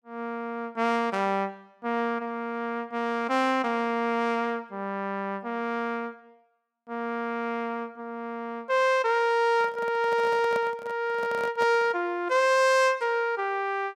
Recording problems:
handling noise; from 9.5 to 12 s; peak -5 dB vs average level

